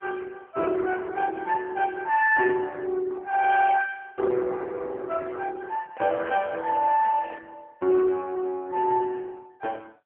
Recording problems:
telephone audio; 320 Hz to 2.3 kHz, AMR-NB
microphone handling noise; from 6 to 7.5 s; peak -14 dB vs average level

